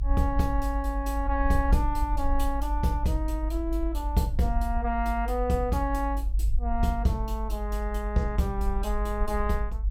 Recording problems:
low-frequency rumble; below 52 Hz, strongest tone 50 Hz, SNR 1 dB

